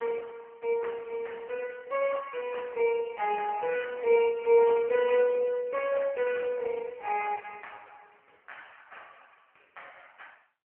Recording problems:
phone line; 190 Hz to 3.1 kHz, AMR-NB

